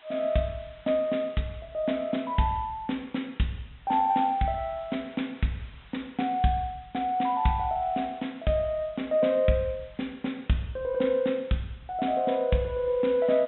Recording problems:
low-pass filter; nothing above 3.7 kHz
lossy compression; G.722, log-spectral distance 11 dB
hiss; SNR 27 dB

